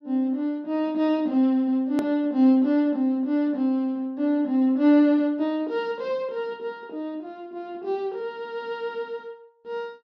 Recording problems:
low-pass filter; nothing above 8 kHz
click at an edit; at 2 s

